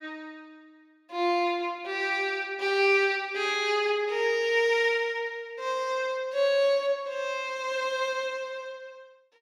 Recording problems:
none

